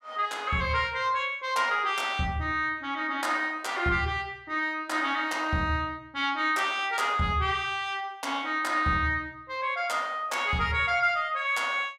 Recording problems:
none

